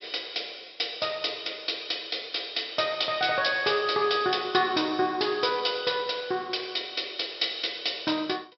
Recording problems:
low-pass filter; nothing above 5.5 kHz

